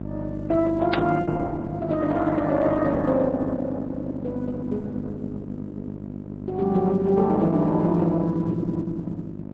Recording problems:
codec artefacts; MP3, then Opus, log-spectral distance 2 dB
hum; 50 Hz, harmonics up to 900 Hz, SNR 10 dB
static burst; at 1 s; peak +2 dB vs average level

